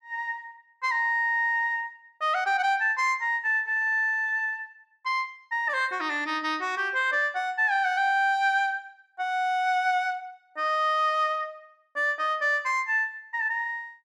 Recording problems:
none

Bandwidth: 13 kHz